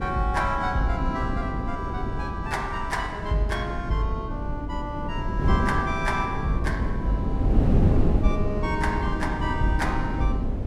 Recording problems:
wind noise; below 200 Hz, SNR 0 dB

